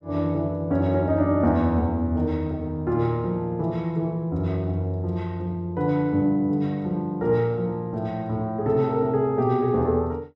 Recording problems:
none

